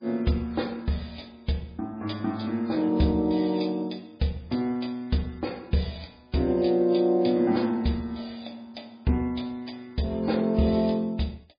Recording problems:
lossy codec; MP3, log-spectral distance 4 dB, nothing above 4.8 kHz

